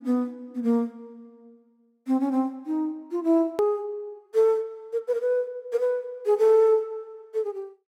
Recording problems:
edit click; at 3.5 s

